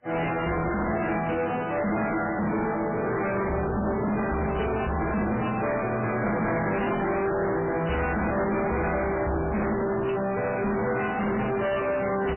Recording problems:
lossy compression; MP3, then AAC, log-spectral distance 6 dB, nothing above 2.9 kHz
distorted audio; hard clipping, signal-to-distortion ratio 6 dB

